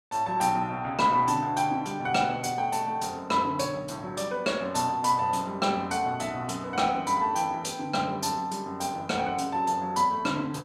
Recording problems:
none

